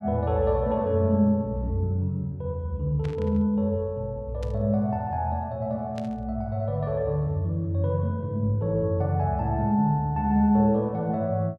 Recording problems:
burst of static; at 3 s, at 4.5 s and at 6 s; peak -14 dB vs average level

